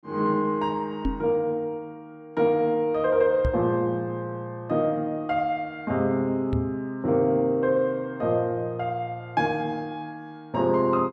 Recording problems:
microphone bump; at 1 s, at 3.5 s and at 6.5 s; peak +2 dB vs average level

